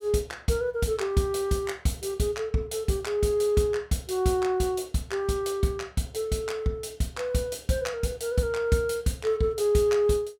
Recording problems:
none

